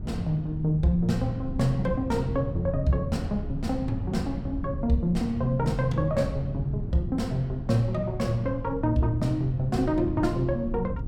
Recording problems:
wind noise; below 160 Hz, SNR 7 dB

